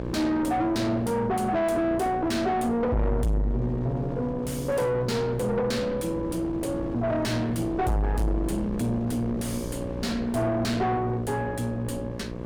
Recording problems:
distorted audio; soft clipping, signal-to-distortion ratio 6 dB
hum; 60 Hz, harmonics up to 1.6 kHz, SNR 9 dB
wind on the microphone; below 340 Hz, SNR 14 dB

